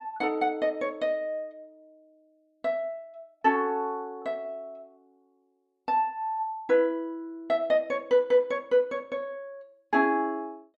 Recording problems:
none

